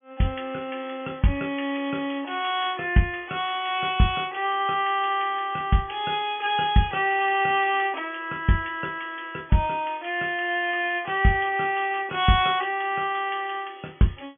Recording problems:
treble cut off; nothing above 3.4 kHz

